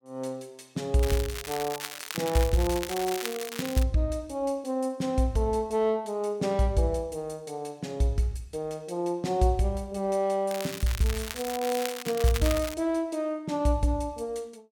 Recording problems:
crackling; from 1 to 4 s and from 11 to 13 s; loose cable, SNR 8 dB

